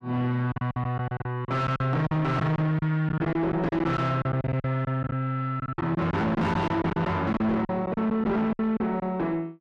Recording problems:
distortion; soft clipping, signal-to-distortion ratio 6 dB
lost packets; 13% of the sound replaced, filled with silence

